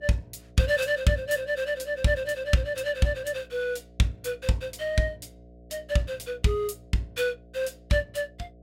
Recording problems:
electrical hum; 60 Hz, harmonics up to 720 Hz, SNR 24 dB

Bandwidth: 16.5 kHz